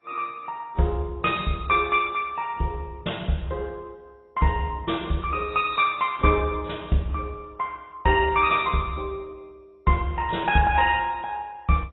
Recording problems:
lossy compression; AAC, then MP2, log-spectral distance 3 dB, nothing above 3.8 kHz

